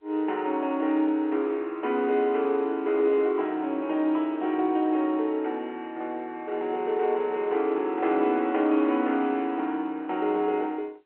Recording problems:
phone line; 280 Hz to 3.4 kHz, G.711

